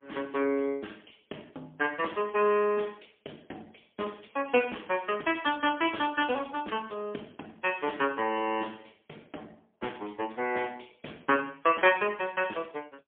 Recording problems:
phone line; 220 Hz to 3.3 kHz, AMR-NB, then MP3

